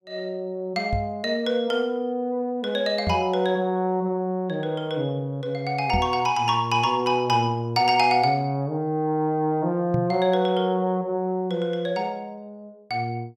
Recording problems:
microphone thump; 4 times, first at 1 s; peak +2 dB vs average level

